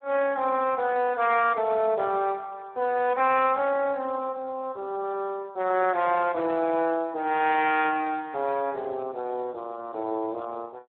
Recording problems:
telephone audio; 280 Hz to 3.9 kHz, Speex

